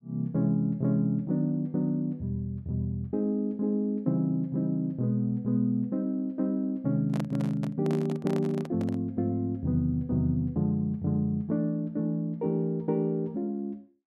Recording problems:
microphone handling noise; from 7 to 9 s; peak -4 dB vs average level

